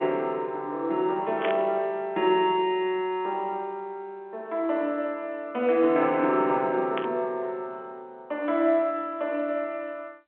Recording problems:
phone line; 260 Hz to 3.7 kHz, G.711
static burst; at 1.5 s and at 7 s; peak -1 dB vs average level

